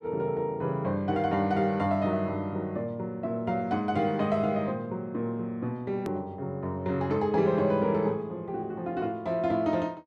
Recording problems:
click at an edit; at 6 s

